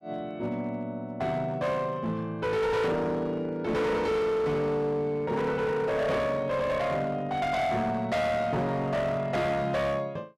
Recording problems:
distorted audio; hard clipping, uneven, signal-to-distortion ratio 8 dB

